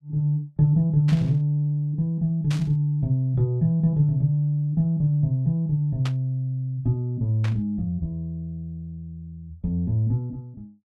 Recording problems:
static burst; 4 times, first at 1 s; peak -7 dB vs average level

